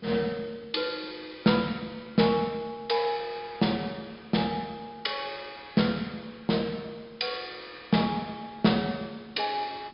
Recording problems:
low-pass filter; nothing above 5.5 kHz
background hiss; SNR 27 dB

